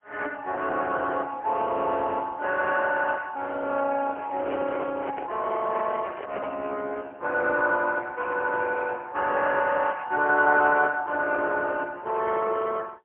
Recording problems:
telephone audio; 260 Hz to 3.3 kHz, AMR-NB, then MP3
handling noise; from 4 to 6.5 s; peak -3 dB vs average level

